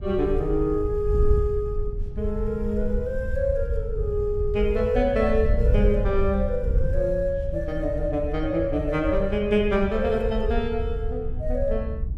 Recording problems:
wind on the microphone; below 72 Hz, SNR 4 dB

